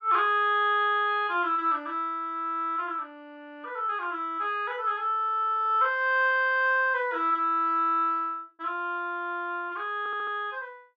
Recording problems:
audio stuttering; at 10 s

